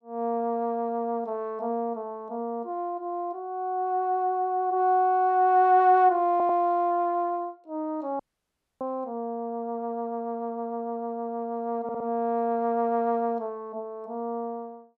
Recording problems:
stutter; at 6.5 s and at 12 s
dropout; at 8 s for 0.5 s

